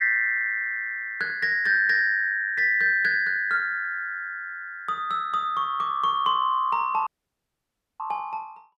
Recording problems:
audio cutting out; at 7 s for 1 s

